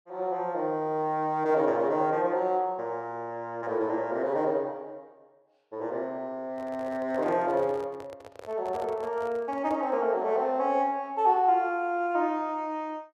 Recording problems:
handling noise; from 6.5 to 10 s; peak -10 dB vs average level

